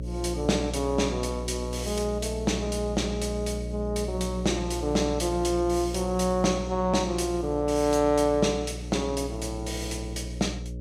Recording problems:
hum; 60 Hz, harmonics up to 600 Hz, SNR 8 dB

